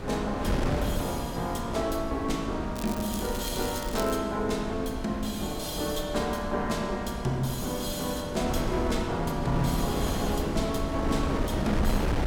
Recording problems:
wind on the microphone; below 430 Hz, SNR 3 dB
crackle; from 3 to 4 s; loose cable, SNR 11 dB

